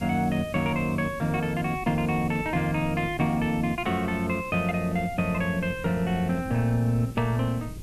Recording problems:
background hiss; slope +2 dB per octave, SNR 24 dB
wind on the microphone; below 200 Hz, SNR 15 dB

